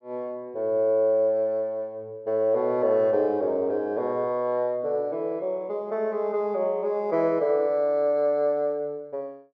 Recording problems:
none

